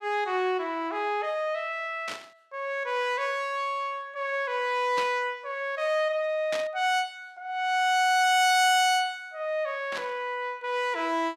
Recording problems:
static burst; 4 times, first at 2 s; peak -4 dB vs average level

